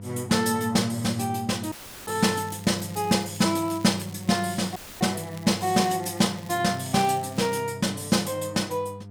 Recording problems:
electrical hum; 50 Hz, harmonics up to 700 Hz, SNR 16 dB
dropout; at 1.5 s and at 5 s; filled with static
crackle; from 2 to 4.5 s and from 4.5 to 7.5 s; loose cable, SNR 22 dB

